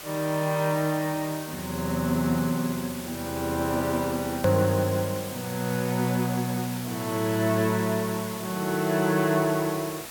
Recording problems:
hiss; slope -1 dB per octave, SNR 11 dB
edit click; at 4.5 s

